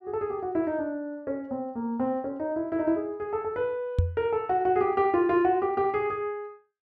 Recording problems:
microphone thump; at 4 s; peak +7 dB vs average level

